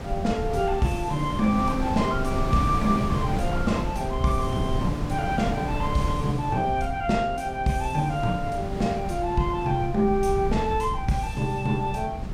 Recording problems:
low-frequency rumble; below 110 Hz, SNR 10 dB
wind on the microphone; below 360 Hz, SNR 8 dB

